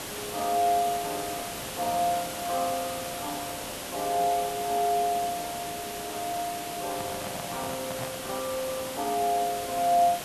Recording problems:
hiss; slope -3 dB per octave, SNR 6 dB
handling noise; from 7 to 8.5 s; peak -4 dB vs average level

